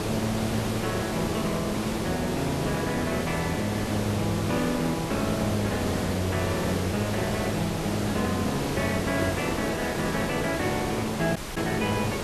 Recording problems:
background hiss; slope -6 dB per octave, SNR 1 dB
dropout; at 11 s

